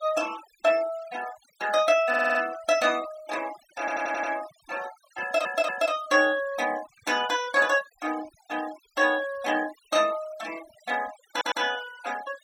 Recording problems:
noise reduction artefacts; signal-to-artefact ratio 17 dB
stutter; 4 times, first at 2 s

